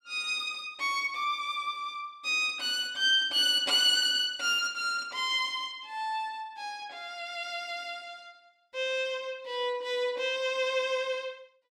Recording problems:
none

